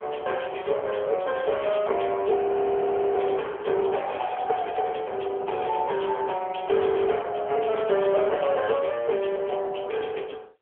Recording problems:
phone line; 340 Hz to 3.3 kHz, AMR-NB
distorted audio; hard clipping, signal-to-distortion ratio 11 dB
frozen audio; at 2.5 s for 1 s

